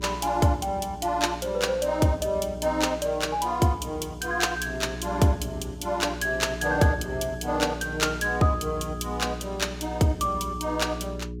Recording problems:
hum; 60 Hz, harmonics up to 420 Hz, SNR 11 dB

